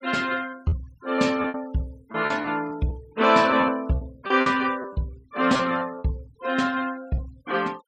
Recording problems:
denoising artefacts; signal-to-artefact ratio 24 dB
lost packets; 8% of the sound replaced, filled with repeated pitch periods

